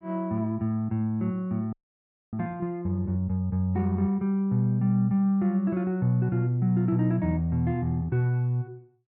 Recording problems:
frozen audio; at 1.5 s for 0.5 s

